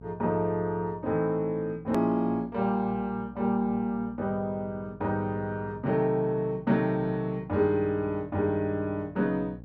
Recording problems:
hum; 60 Hz, harmonics up to 780 Hz, SNR 21 dB
edit click; at 2 s

